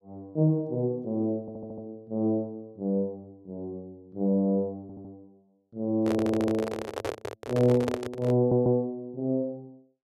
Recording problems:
stutter; 4 times, first at 1.5 s
microphone handling noise; from 6 to 8.5 s; peak +2 dB vs average level

